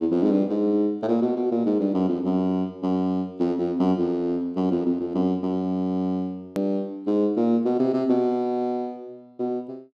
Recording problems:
edit click; at 6.5 s

